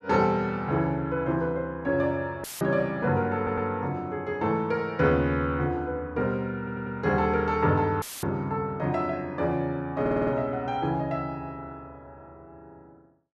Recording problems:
audio cutting out; at 2.5 s and at 8 s; filled with static
audio stuttering; at 3.5 s, at 6.5 s and at 10 s

